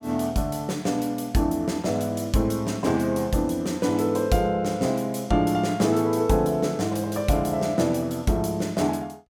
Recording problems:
none

